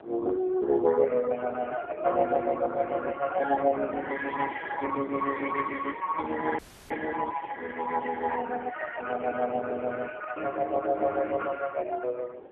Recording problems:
phone line; 300 Hz to 3.3 kHz, AMR-NB
wind noise; below 620 Hz, SNR 15 dB
audio cutting out; at 6.5 s

